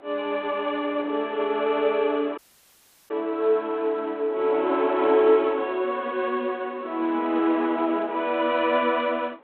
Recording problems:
telephone audio; 260 Hz to 3.5 kHz, G.726
wind noise; below 1.1 kHz, SNR 24 dB
dropout; at 2.5 s for 0.5 s

